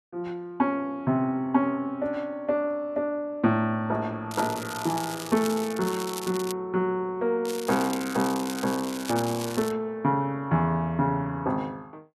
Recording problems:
crackle; from 4.5 to 6.5 s and from 7.5 to 9.5 s; loose cable, SNR 11 dB

